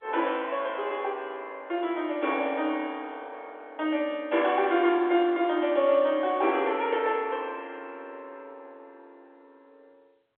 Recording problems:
phone line; 280 Hz to 3.5 kHz, G.711

